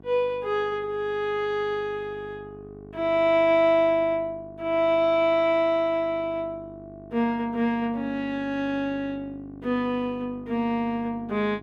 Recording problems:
hum; 50 Hz, harmonics up to 1.2 kHz, SNR 20 dB

